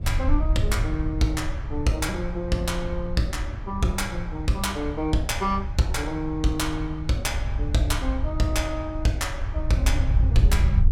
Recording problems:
wind noise; below 78 Hz, SNR 2 dB

